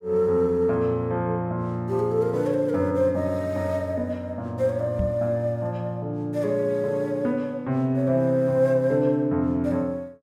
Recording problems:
knock on the microphone; at 5 s; peak 0 dB vs average level

